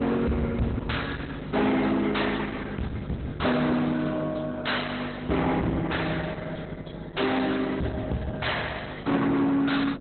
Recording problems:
codec artefacts; Opus, log-spectral distance 6 dB, nothing above 4.1 kHz
distorted audio; hard clipping, uneven, signal-to-distortion ratio 7 dB
mains hum; 50 Hz, harmonics up to 600 Hz, SNR 12 dB

